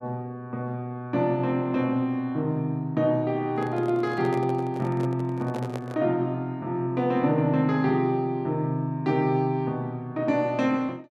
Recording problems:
microphone handling noise; from 3.5 to 6 s; peak -5 dB vs average level

